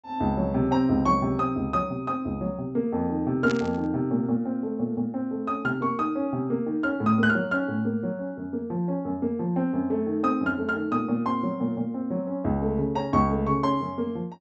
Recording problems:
treble cut off; nothing above 7.8 kHz
burst of static; at 3.5 s; peak -5 dB vs average level

